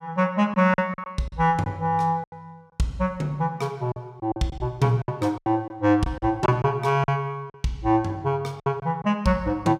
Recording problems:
lost packets; 9% of the sound replaced, filled with silence

